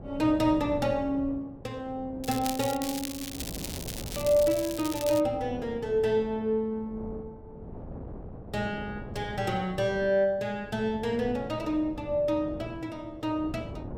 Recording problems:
wind noise; below 380 Hz, SNR 14 dB
crackle; from 2 to 5 s; loose cable, SNR 9 dB

